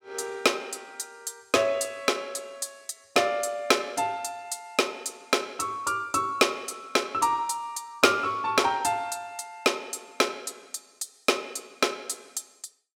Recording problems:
none

